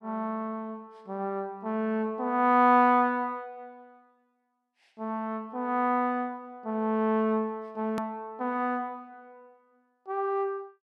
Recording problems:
hard cut with a click; at 8 s

